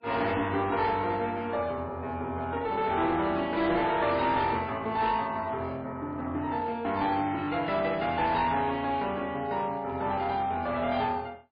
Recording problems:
lossy compression; MP3, log-spectral distance 2 dB, nothing above 4.2 kHz
distortion; hard clipping, uneven, signal-to-distortion ratio 11 dB

